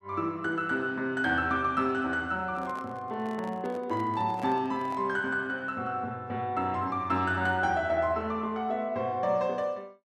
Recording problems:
handling noise; from 2.5 to 5 s; peak -9 dB vs average level

